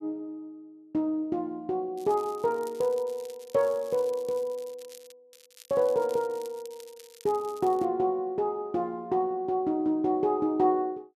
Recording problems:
crackle; from 2 to 5 s and from 5.5 to 8 s; loose cable, SNR 23 dB

